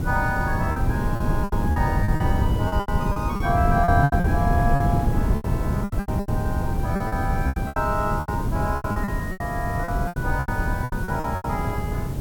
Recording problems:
background hiss; slope -1 dB per octave, SNR 18 dB
wind noise; below 190 Hz, SNR -3 dB
lost packets; 17% of the sound replaced, filled with repeated pitch periods

